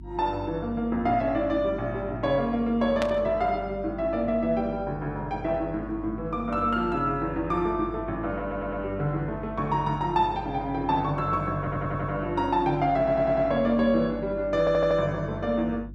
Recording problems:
hum; 50 Hz, harmonics up to 350 Hz, SNR 16 dB
static burst; at 3 s; peak -2 dB vs average level
audio stuttering; 4 times, first at 8.5 s

